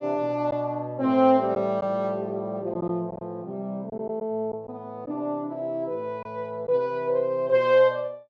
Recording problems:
lost packets; 3% of the sound replaced, filled with silence

